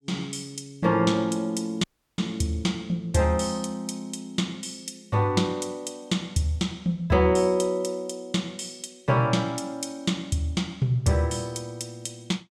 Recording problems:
audio cutting out; at 2 s

